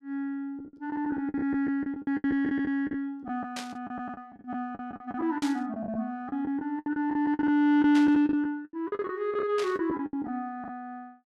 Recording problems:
packet loss; 16% of the sound replaced, filled with the last packet
burst of static; 4 times, first at 3.5 s; peak -5 dB vs average level

